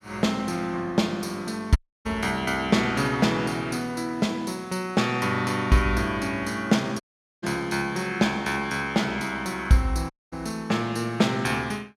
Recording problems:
dropout; at 2 s, at 7 s and at 10 s

